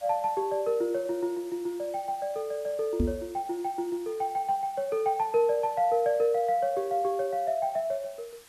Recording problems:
background hiss; slope 0 dB per octave, SNR 23 dB
knock on the microphone; at 3 s; peak +5 dB vs average level

